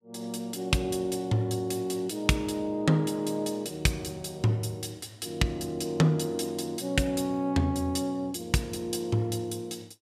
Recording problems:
none

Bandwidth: 14.5 kHz